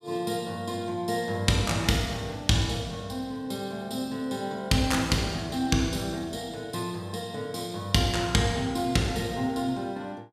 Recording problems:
none

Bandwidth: 14.5 kHz